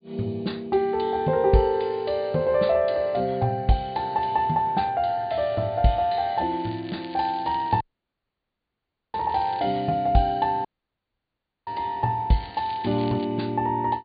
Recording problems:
treble missing; nothing above 4.7 kHz
crackling; from 6.5 to 9.5 s and at 12 s; loose cable, SNR 22 dB
dropout; at 8 s for 1.5 s and at 11 s for 1 s

